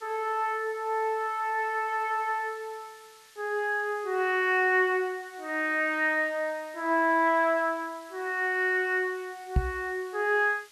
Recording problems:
background hiss; slope +3 dB per octave, SNR 26 dB
microphone thump; at 9.5 s; peak +6 dB vs average level

